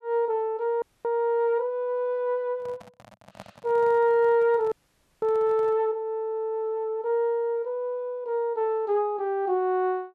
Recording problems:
audio freezing; at 1 s and at 4.5 s for 0.5 s
handling noise; from 2.5 to 6 s; peak -12 dB vs average level

